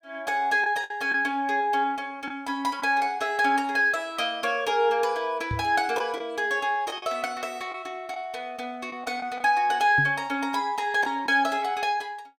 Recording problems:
packet loss; 3% of the sound replaced, filled with the last packet
microphone thump; at 5.5 s and at 10 s; peak -2 dB vs average level

